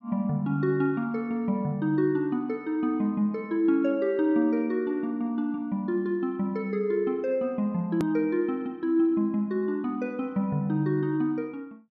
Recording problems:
edit click; at 8 s

